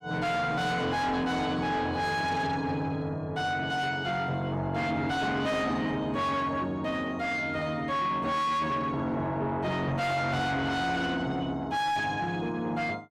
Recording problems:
distorted audio; soft clipping, signal-to-distortion ratio 7 dB

